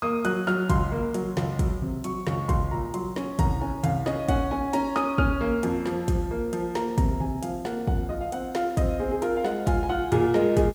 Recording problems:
hiss; slope +1 dB per octave, SNR 28 dB

